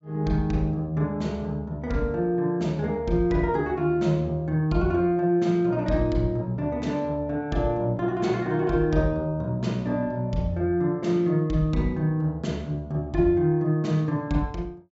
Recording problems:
low-pass filter; nothing above 8 kHz

